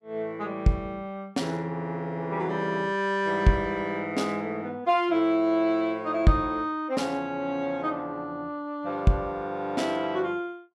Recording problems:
none

